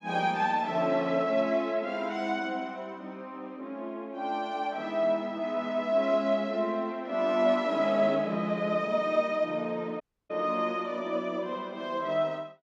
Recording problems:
dropout; at 10 s

